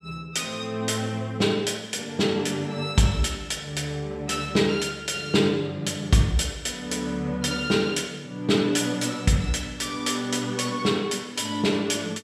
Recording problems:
none

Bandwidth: 14 kHz